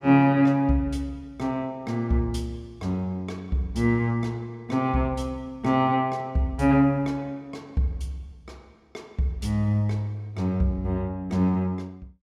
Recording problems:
none

